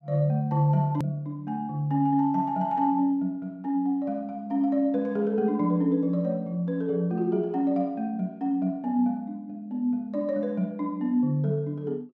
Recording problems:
click at an edit; at 1 s

